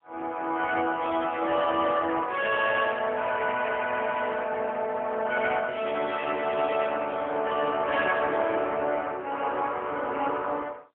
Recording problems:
telephone audio; 300 Hz to 2.9 kHz, AMR-NB, then MP3

